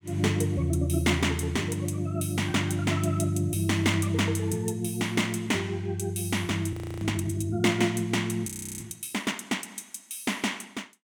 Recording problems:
frozen audio; at 6.5 s and at 8.5 s

